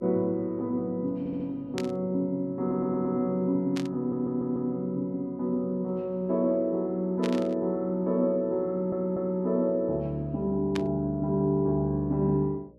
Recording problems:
hum; 60 Hz, harmonics up to 600 Hz, SNR 29 dB
stutter; 4 times, first at 1 s
burst of static; 4 times, first at 2 s; peak -3 dB vs average level

